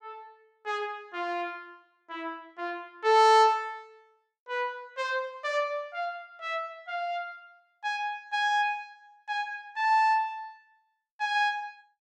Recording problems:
none

